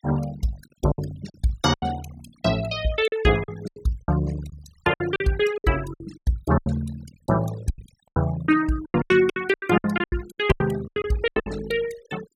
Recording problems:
noise reduction artefacts; signal-to-artefact ratio 16 dB
packet loss; 15% of the sound replaced, filled with silence

